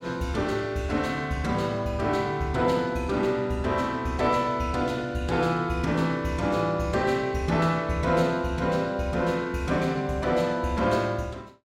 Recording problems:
none

